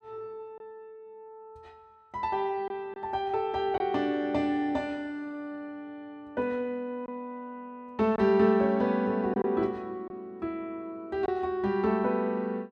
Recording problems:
lost packets; 1.6% of the sound replaced, filled with silence

